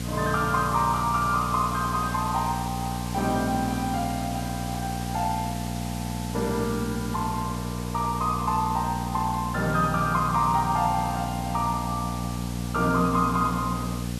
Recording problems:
hum; 60 Hz, harmonics up to 780 Hz, SNR 5 dB
background hiss; slope +2 dB per octave, SNR 13 dB

